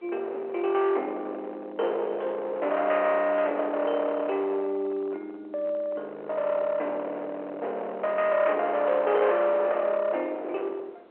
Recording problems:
phone line; 690 Hz to 3.1 kHz, G.711
distorted audio; hard clipping, uneven, signal-to-distortion ratio 11 dB
wind on the microphone; below 870 Hz, SNR 19 dB

